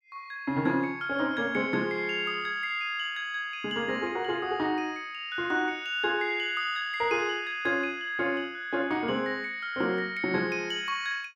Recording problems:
none

